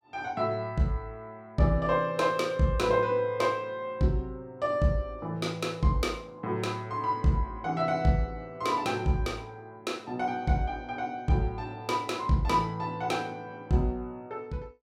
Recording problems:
none

